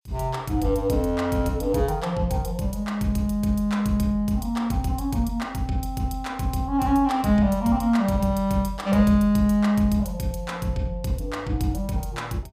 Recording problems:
none

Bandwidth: 15.5 kHz